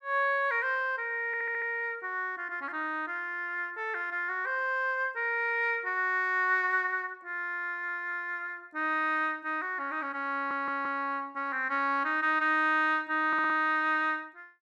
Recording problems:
stutter; 4 times, first at 1.5 s

